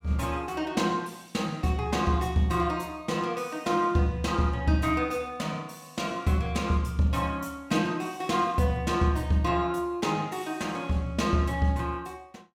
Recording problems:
none

